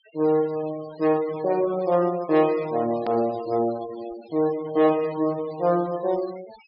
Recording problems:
treble missing; nothing above 5.5 kHz
denoising artefacts; signal-to-artefact ratio 21 dB
hard cut with a click; at 3 s

